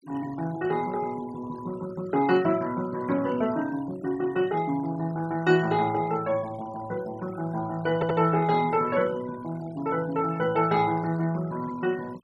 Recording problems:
denoising artefacts; signal-to-artefact ratio 20 dB
audio stuttering; at 8 s

